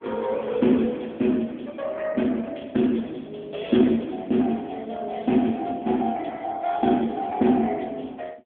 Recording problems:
phone line; 170 Hz to 3.4 kHz, AMR-NB

